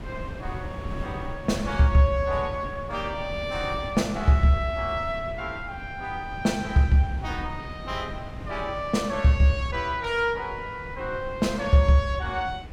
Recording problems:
wind on the microphone; below 220 Hz, SNR 13 dB

